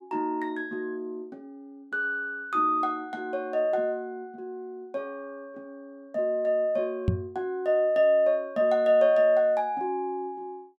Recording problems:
knock on the microphone; at 7 s; peak +5 dB vs average level

